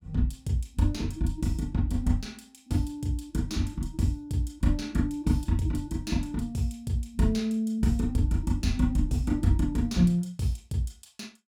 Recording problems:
none

